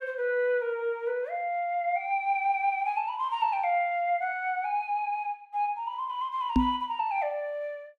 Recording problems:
knock on the microphone; at 6.5 s; peak +8 dB vs average level

